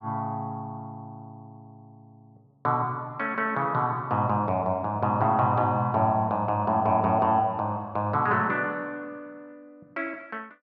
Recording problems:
none

